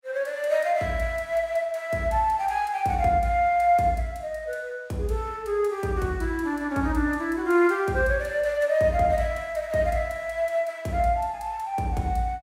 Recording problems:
none

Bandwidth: 16 kHz